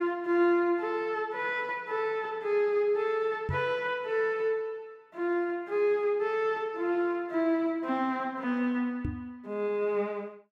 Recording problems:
microphone bump; at 3.5 s and at 9 s; peak 0 dB vs average level

